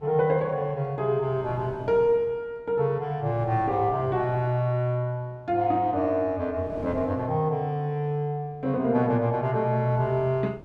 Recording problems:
wind noise; below 450 Hz, SNR 19 dB

